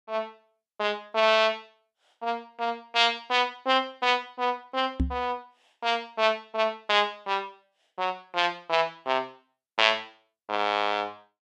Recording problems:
knock on the microphone; at 5 s; peak +4 dB vs average level

